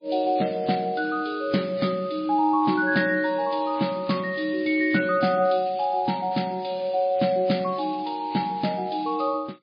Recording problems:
lossy codec; MP3, log-spectral distance 4 dB, nothing above 4.5 kHz

